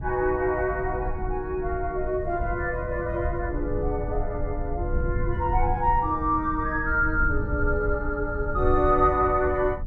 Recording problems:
low-frequency rumble; below 88 Hz, SNR 6 dB

